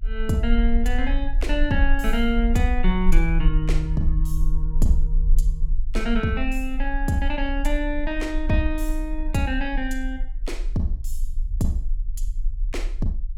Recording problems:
rumble; below 40 Hz, strongest tone 20 Hz, SNR 1 dB

